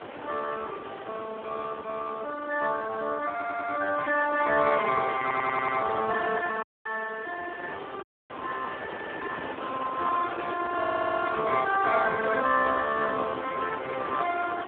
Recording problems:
telephone audio; 240 Hz to 2.1 kHz, Speex
wind on the microphone; below 1.4 kHz, SNR 10 dB
audio stuttering; at 3.5 s, at 5 s and at 11 s
audio cutting out; at 6.5 s and at 8 s

